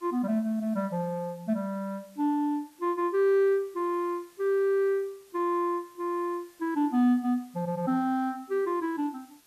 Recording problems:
hiss; slope -1 dB per octave, SNR 29 dB

